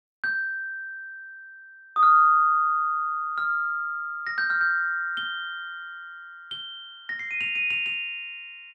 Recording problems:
none

